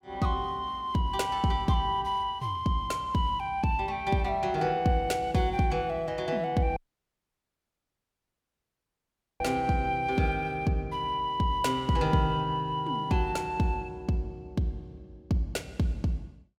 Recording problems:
dropout; at 7 s for 2.5 s

